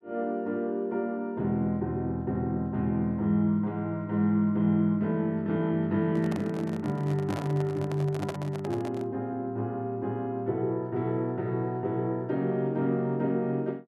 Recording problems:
handling noise; from 6 to 9 s; peak -3 dB vs average level

